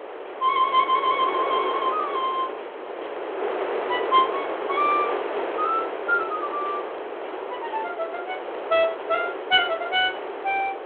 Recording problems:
telephone audio; 320 Hz to 3.5 kHz, G.726
wind noise; below 1 kHz, SNR 6 dB

